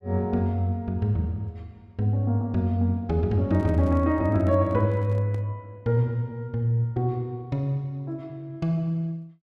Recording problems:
handling noise; from 3.5 to 5.5 s; peak -10 dB vs average level

